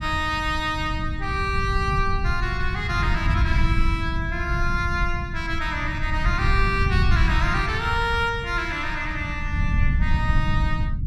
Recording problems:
rumble; below 110 Hz, SNR 1 dB

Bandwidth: 14 kHz